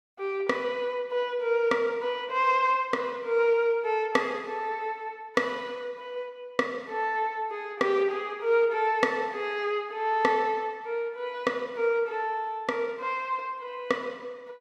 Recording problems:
none

